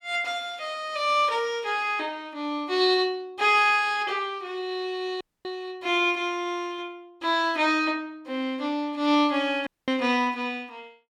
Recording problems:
audio cutting out; at 5 s and at 9.5 s

